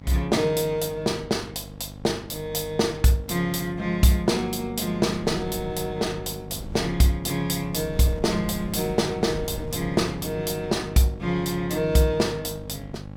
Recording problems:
electrical hum; 50 Hz, harmonics up to 1.1 kHz, SNR 15 dB
wind on the microphone; below 170 Hz, SNR 19 dB

